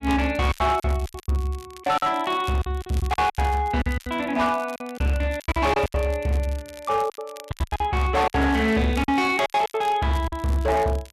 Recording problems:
distortion; hard clipping, signal-to-distortion ratio 10 dB
crackling; vinyl, SNR 22 dB
lost packets; 14% of the sound replaced, filled with silence

